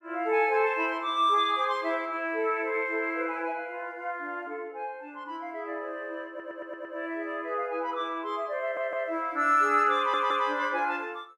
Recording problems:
stutter; at 6.5 s, at 8.5 s and at 10 s

